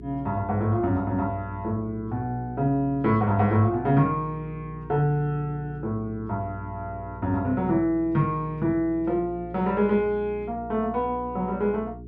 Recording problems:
electrical hum; 60 Hz, harmonics up to 420 Hz, SNR 15 dB

